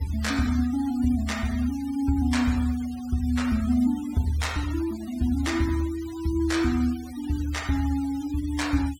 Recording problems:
denoising artefacts; signal-to-artefact ratio 17 dB

